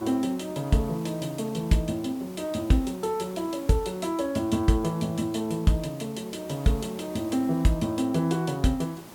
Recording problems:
background hiss; slope -5 dB per octave, SNR 19 dB

